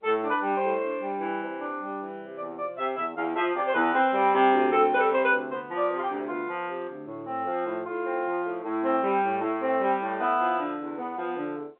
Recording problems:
phone line; 220 Hz to 3.7 kHz, G.711

